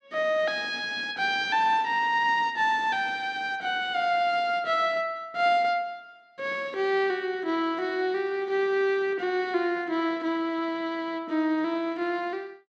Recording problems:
none

